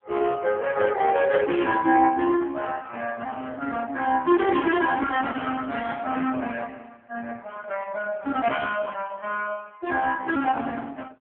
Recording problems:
telephone audio; 240 Hz to 3.5 kHz, AMR-NB

